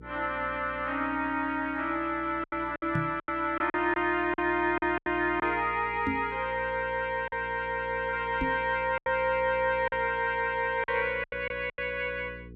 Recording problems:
hum; 60 Hz, harmonics up to 480 Hz, SNR 19 dB
packet loss; 7% of the sound replaced, filled with silence
knock on the microphone; at 3 s, at 6 s and at 8.5 s; peak +1 dB vs average level

